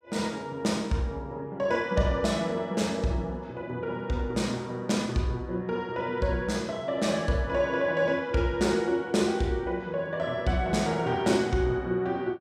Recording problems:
none

